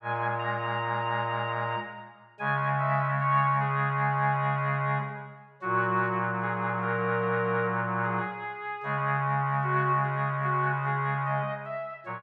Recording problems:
none

